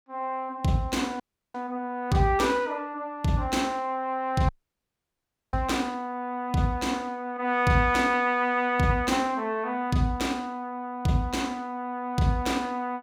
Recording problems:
dropout; at 1 s and at 4.5 s for 1 s

